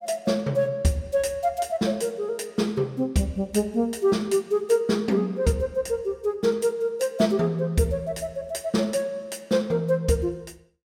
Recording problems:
none

